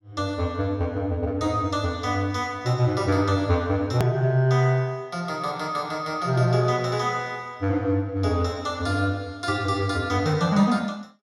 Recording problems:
edit click; at 4 s

